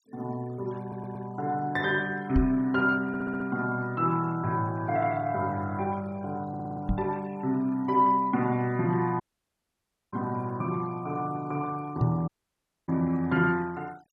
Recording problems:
noise reduction artefacts; signal-to-artefact ratio 26 dB
stutter; at 1 s, at 3 s and at 6.5 s
microphone bump; at 2.5 s, at 7 s and at 12 s; peak +6 dB vs average level
audio cutting out; at 9 s for 1 s and at 12 s for 0.5 s

